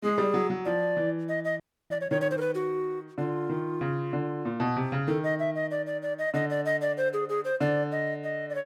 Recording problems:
audio freezing; at 1.5 s

